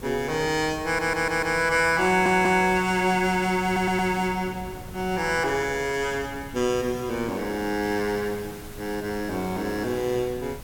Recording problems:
background hiss; slope -2 dB per octave, SNR 21 dB
wind noise; below 280 Hz, SNR 18 dB
audio stuttering; at 1 s, at 2 s and at 3.5 s

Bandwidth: 17 kHz